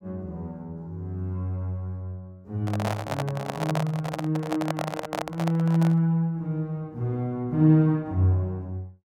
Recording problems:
microphone handling noise; from 2.5 to 6 s; peak +1 dB vs average level

